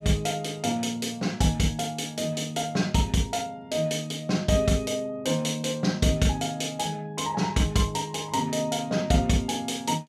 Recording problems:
none

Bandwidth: 14.5 kHz